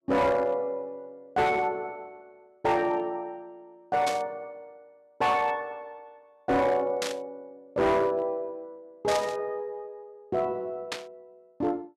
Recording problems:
distortion; hard clipping, signal-to-distortion ratio 11 dB
static burst; 4 times, first at 4 s; peak +1 dB vs average level

